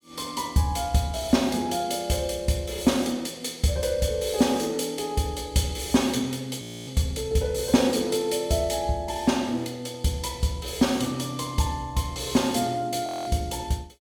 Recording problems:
frozen audio; at 6.5 s and at 13 s

